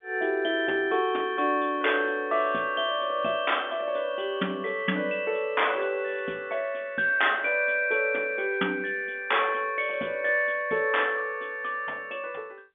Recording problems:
telephone audio; 220 Hz to 3.6 kHz, G.711

